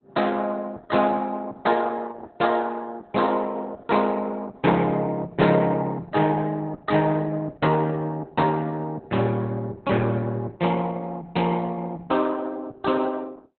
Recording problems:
codec artefacts; Opus, log-spectral distance 4 dB, nothing above 4.1 kHz

